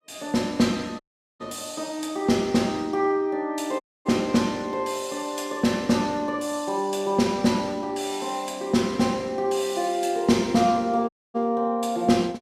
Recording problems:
dropout; at 1 s, at 4 s and at 11 s

